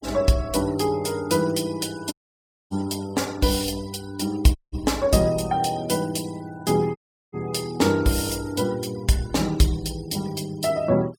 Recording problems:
noise reduction artefacts; signal-to-artefact ratio 21 dB
dropout; at 2 s for 0.5 s, at 4.5 s and at 7 s

